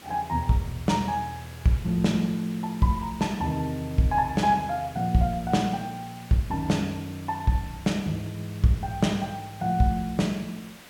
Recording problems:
hiss; slope -2 dB per octave, SNR 20 dB

